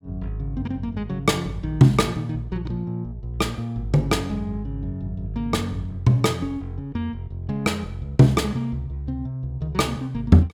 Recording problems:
none

